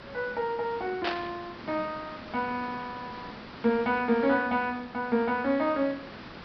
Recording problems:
treble cut off; nothing above 5.5 kHz
background hiss; SNR 14 dB
burst of static; at 1 s; peak +2 dB vs average level

